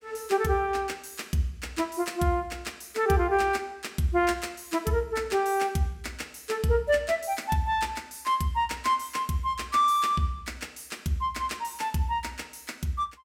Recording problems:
none

